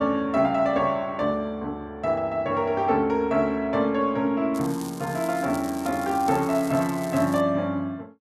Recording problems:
crackle; from 4.5 to 7.5 s; loose cable, SNR 18 dB

